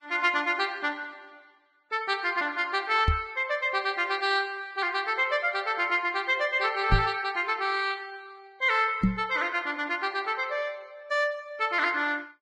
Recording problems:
codec artefacts; Vorbis, log-spectral distance 3 dB
microphone bump; at 3 s, at 7 s and at 9 s; peak +7 dB vs average level

